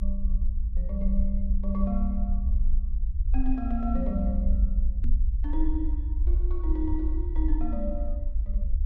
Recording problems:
rumble; below 54 Hz, strongest tone 22 Hz, SNR -5 dB
microphone bump; at 5 s; peak +1 dB vs average level

